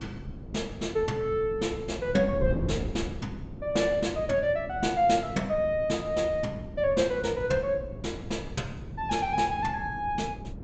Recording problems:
low-pass filter; nothing above 8 kHz
wind on the microphone; below 230 Hz, SNR 10 dB

